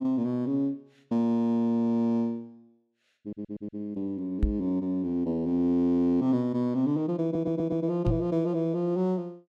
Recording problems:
stutter; at 3 s and at 7 s
knock on the microphone; at 4.5 s and at 8 s; peak +4 dB vs average level

